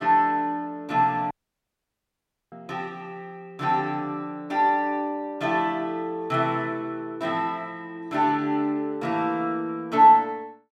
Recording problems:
dropout; at 1.5 s for 1 s

